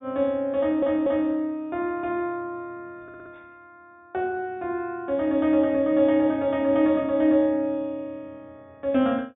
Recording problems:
treble missing; nothing above 4 kHz
stutter; at 0.5 s and at 3 s

